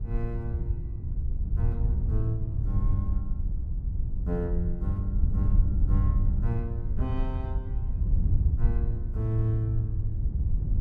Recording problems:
wind noise; below 82 Hz, SNR -4 dB

